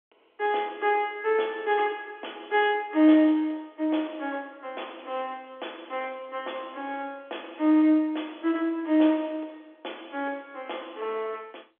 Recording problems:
phone line; 260 Hz to 3.6 kHz, G.711

